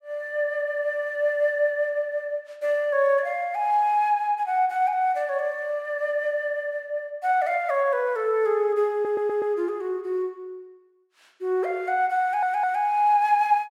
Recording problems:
audio stuttering; at 9 s and at 12 s

